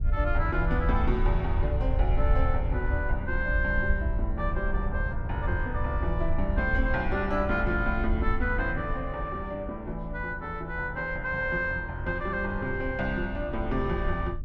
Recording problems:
wind on the microphone; below 72 Hz, SNR 2 dB

